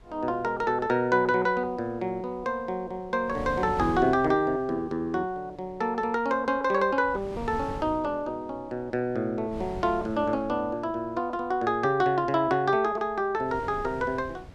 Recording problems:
wind on the microphone; below 340 Hz, SNR 18 dB

